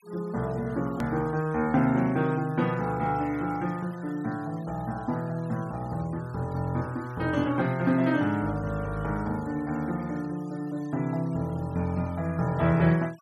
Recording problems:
noise reduction artefacts; signal-to-artefact ratio 24 dB
hard cut with a click; at 1 s

